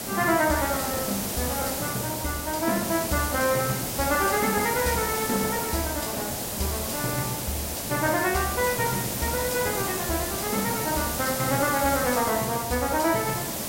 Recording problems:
hiss; SNR 2 dB

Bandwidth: 16 kHz